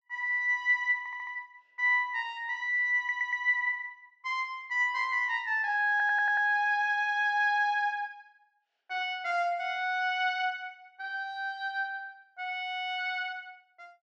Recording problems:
treble missing; nothing above 8 kHz
stutter; at 1 s, at 3 s and at 6 s

